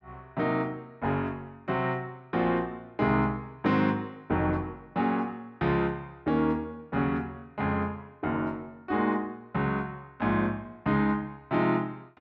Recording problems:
none

